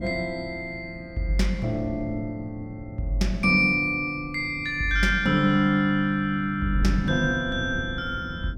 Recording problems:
wind on the microphone; below 220 Hz, SNR 15 dB

